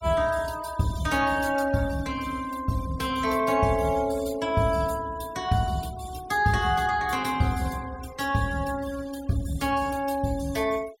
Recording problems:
denoising artefacts; signal-to-artefact ratio 20 dB

